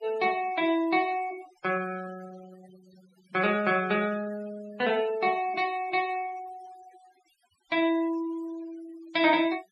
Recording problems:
denoising artefacts; signal-to-artefact ratio 19 dB

